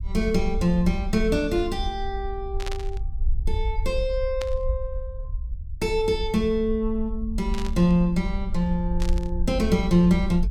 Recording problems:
low-frequency rumble; below 58 Hz, SNR 7 dB
static burst; 4 times, first at 2.5 s; peak -6 dB vs average level

